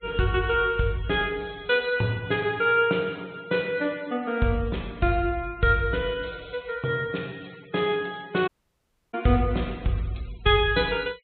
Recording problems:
treble missing; nothing above 4 kHz
noise reduction artefacts; signal-to-artefact ratio 25 dB
audio cutting out; at 8.5 s for 0.5 s

